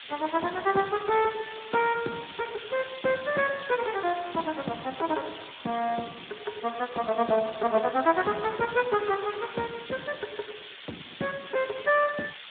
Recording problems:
phone line; 220 Hz to 2.9 kHz, Speex
hiss; SNR 13 dB

